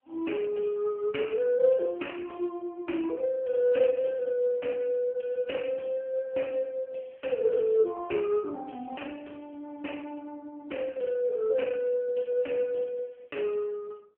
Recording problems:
telephone audio; 280 Hz to 3.2 kHz, AMR-NB

